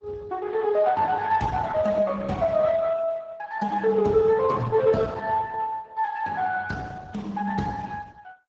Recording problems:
lossy codec; Speex, then Opus, log-spectral distance 3 dB, nothing above 7.6 kHz

